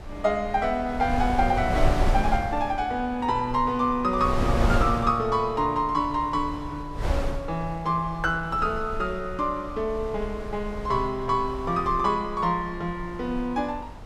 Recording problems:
wind noise; below 220 Hz, SNR 7 dB

